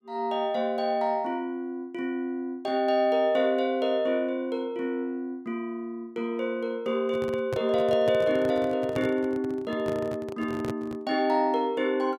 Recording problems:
microphone handling noise; from 7 to 11 s; peak -2 dB vs average level

